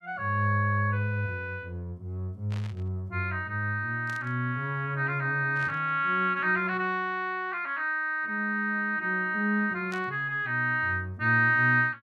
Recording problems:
static burst; 4 times, first at 2.5 s; peak -12 dB vs average level

